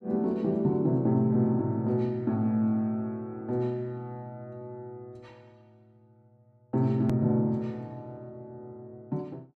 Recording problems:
edit click; at 7 s

